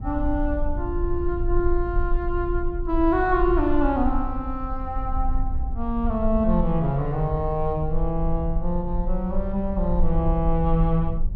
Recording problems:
rumble; below 50 Hz, strongest tone 20 Hz, SNR 4 dB

